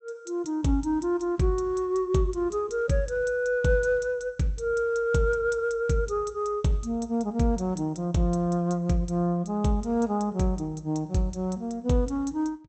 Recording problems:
treble missing; nothing above 8 kHz

